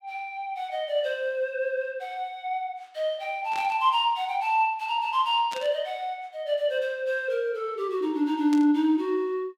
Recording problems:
burst of static; at 3.5 s, at 5.5 s and at 8.5 s; peak -7 dB vs average level

